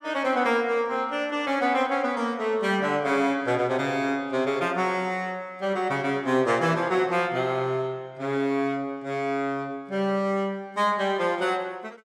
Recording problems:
none

